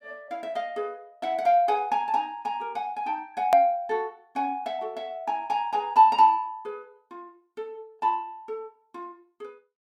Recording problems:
hard cut with a click; at 3.5 s

